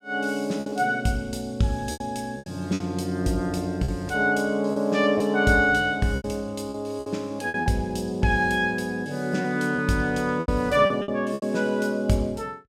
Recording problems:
packet loss; 8% of the sound replaced, filled with repeated pitch periods

